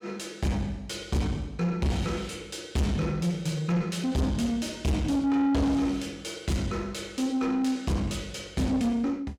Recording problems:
distortion; soft clipping, signal-to-distortion ratio 7 dB

